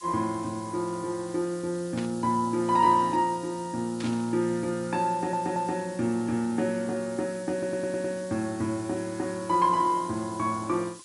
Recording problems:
codec artefacts; MP3, log-spectral distance 7 dB
hiss; SNR 19 dB
burst of static; at 2 s and at 4 s; peak -8 dB vs average level
stutter; at 5 s and at 7.5 s

